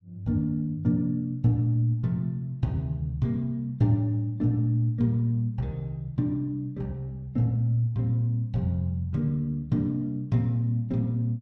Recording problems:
none

